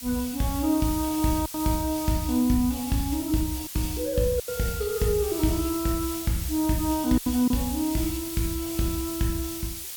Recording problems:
background hiss; slope +3 dB per octave, SNR 8 dB
packet loss; 3% of the sound replaced, filled with silence

